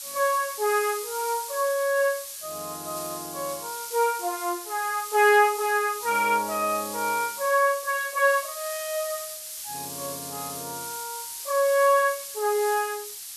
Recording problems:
hiss; slope +5 dB per octave, SNR 10 dB

